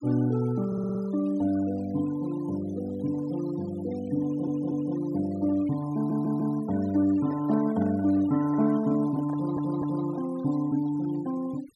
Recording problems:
denoising artefacts; signal-to-artefact ratio 20 dB
audio stuttering; 4 times, first at 0.5 s
microphone handling noise; from 7 to 10 s; peak -11 dB vs average level

